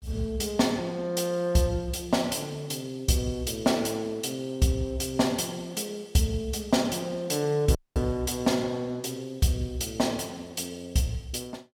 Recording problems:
dropout; at 8 s

